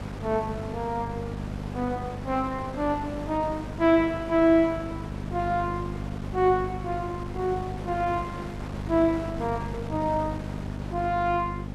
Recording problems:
hum; 50 Hz, harmonics up to 500 Hz, SNR 9 dB
wind noise; below 850 Hz, SNR 13 dB

